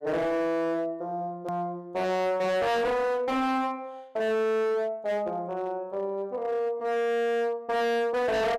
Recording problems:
distortion; hard clipping, signal-to-distortion ratio 6 dB
hard cut with a click; at 1.5 s

